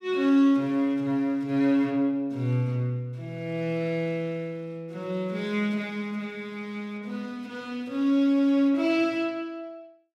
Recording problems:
none

